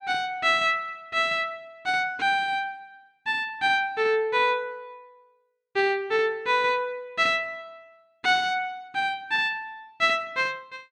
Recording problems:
none

